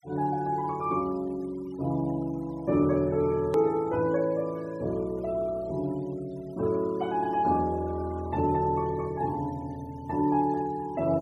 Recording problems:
denoising artefacts; signal-to-artefact ratio 25 dB
click at an edit; at 3.5 s

